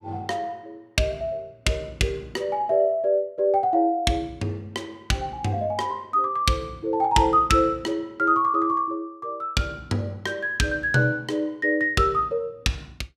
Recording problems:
none

